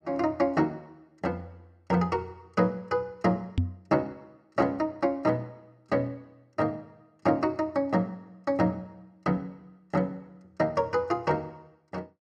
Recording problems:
microphone thump; at 3.5 s; peak +6 dB vs average level

